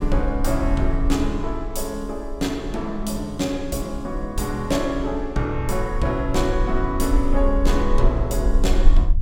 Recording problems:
rumble; below 46 Hz, strongest tone 20 Hz, SNR 3 dB

